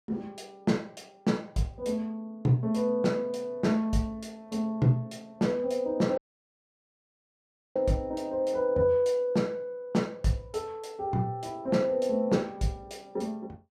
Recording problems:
dropout; at 6 s for 1.5 s

